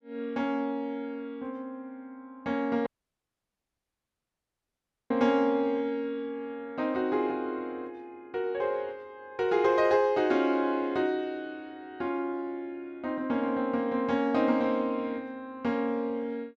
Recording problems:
dropout; at 3 s for 2 s

